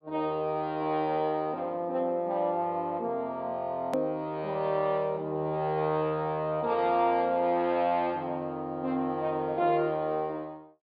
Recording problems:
low-pass filter; nothing above 4.9 kHz
edit click; at 4 s

